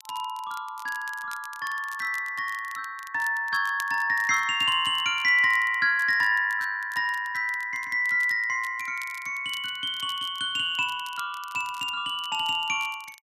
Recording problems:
crackle; vinyl, SNR 22 dB

